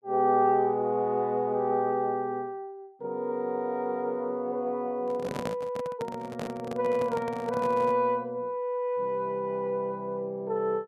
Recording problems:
handling noise; from 5 to 8 s; peak 0 dB vs average level

